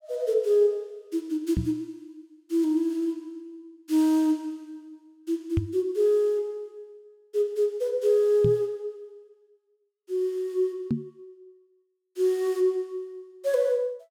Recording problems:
microphone bump; 4 times, first at 1.5 s; peak +4 dB vs average level

